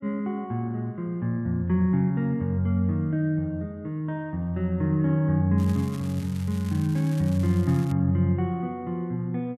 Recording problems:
crackle; from 5.5 to 8 s; loose cable, SNR 21 dB

